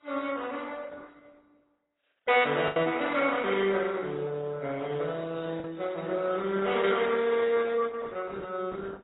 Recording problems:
codec artefacts; Opus, then AAC, log-spectral distance 4 dB, nothing above 3.8 kHz
packet loss; 1.5% of the sound replaced, filled with the last packet

